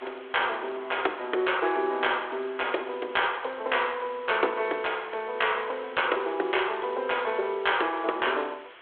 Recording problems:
phone line; 300 Hz to 3.4 kHz, G.726
background hiss; SNR 20 dB

